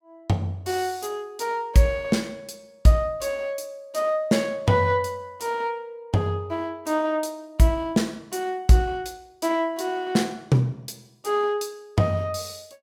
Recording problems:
none

